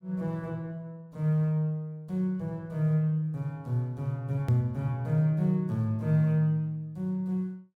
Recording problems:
hard cut with a click; at 4.5 s

